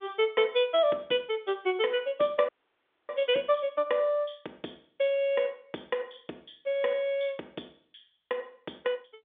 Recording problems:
telephone audio; 260 Hz to 3.6 kHz, G.711
dropout; at 2.5 s for 0.5 s

